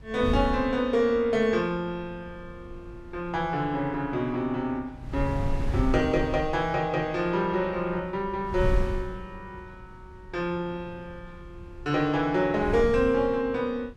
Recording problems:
wind noise; below 98 Hz, SNR 9 dB

